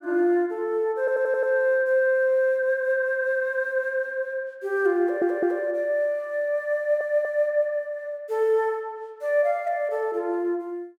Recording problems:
audio stuttering; at 1 s, at 5 s and at 7 s

